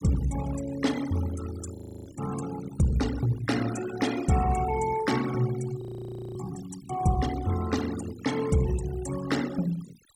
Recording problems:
denoising artefacts; signal-to-artefact ratio 13 dB
frozen audio; at 2 s and at 6 s for 0.5 s

